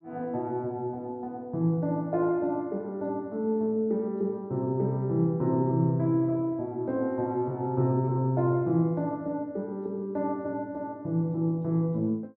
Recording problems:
none

